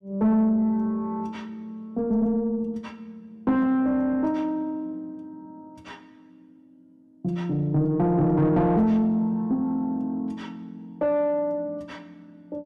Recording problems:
distorted audio; soft clipping, signal-to-distortion ratio 10 dB

